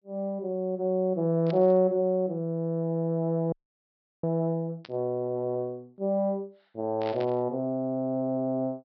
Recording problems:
low-pass filter; nothing above 5.5 kHz
burst of static; at 1.5 s, at 5 s and at 7 s; peak -10 dB vs average level
frozen audio; at 3.5 s for 0.5 s

